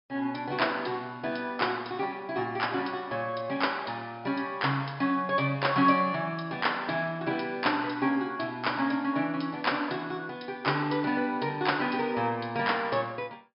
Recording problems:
low-pass filter; nothing above 5.5 kHz

